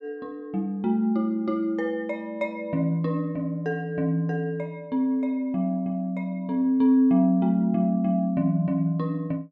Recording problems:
none

